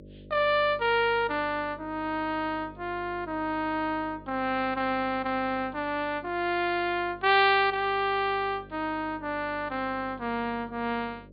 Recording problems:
low-pass filter; nothing above 4.8 kHz
electrical hum; 50 Hz, harmonics up to 600 Hz, SNR 21 dB

